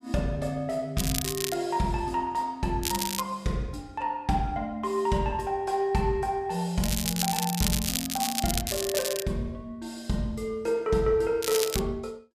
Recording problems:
crackling; 4 times, first at 1 s; loose cable, SNR 2 dB

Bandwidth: 14.5 kHz